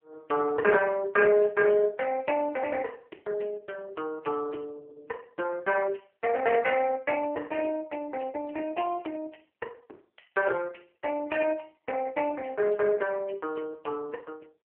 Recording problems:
phone line; 320 Hz to 2.2 kHz, AMR-NB

